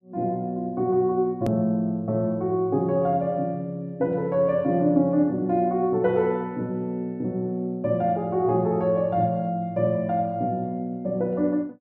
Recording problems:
click at an edit; at 1.5 s

